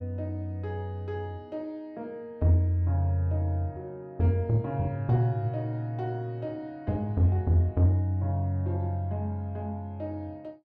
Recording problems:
none

